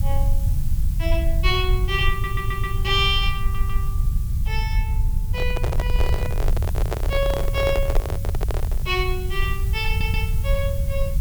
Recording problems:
hiss; slope 0 dB per octave, SNR 15 dB
low-frequency rumble; below 78 Hz, SNR -2 dB
stutter; at 2 s, at 3.5 s and at 10 s
microphone handling noise; from 5.5 to 9 s; peak +3 dB vs average level

